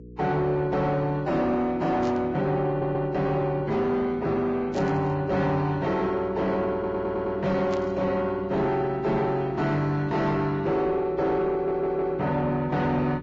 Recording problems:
lossy compression; Vorbis, log-spectral distance 2 dB
distorted audio; soft clipping, signal-to-distortion ratio 11 dB
electrical hum; 60 Hz, harmonics up to 480 Hz, SNR 20 dB
static burst; at 2 s, at 4.5 s and at 7.5 s; peak -12 dB vs average level
audio stuttering; at 2.5 s, at 6.5 s and at 12 s

